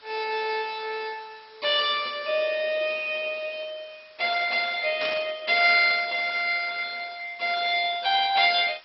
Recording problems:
codec artefacts; MP2, log-spectral distance 7 dB, nothing above 4.9 kHz
background hiss; SNR 28 dB
static burst; at 5 s; peak -5 dB vs average level

